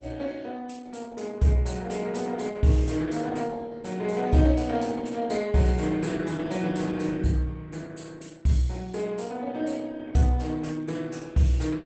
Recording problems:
lossy codec; Opus, log-spectral distance 4 dB, nothing above 8 kHz

